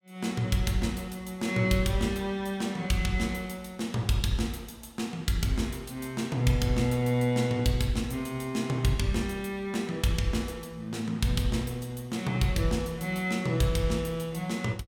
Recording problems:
none

